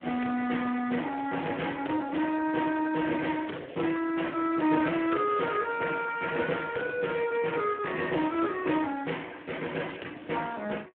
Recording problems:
telephone audio; 220 Hz to 3 kHz, Speex

